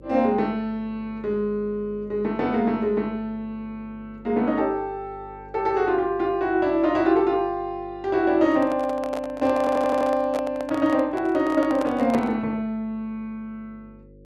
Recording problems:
hum; 50 Hz, harmonics up to 550 Hz, SNR 24 dB
handling noise; from 8.5 to 12 s; peak -1 dB vs average level
audio stuttering; at 9.5 s

